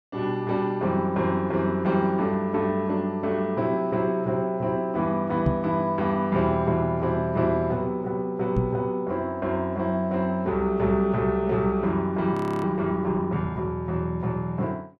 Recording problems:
microphone bump; at 5.5 s and at 8.5 s; peak +4 dB vs average level
audio freezing; at 12 s

